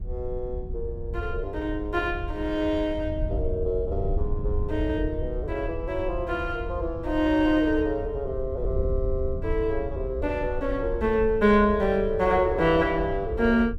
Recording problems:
wind noise; below 82 Hz, SNR 8 dB

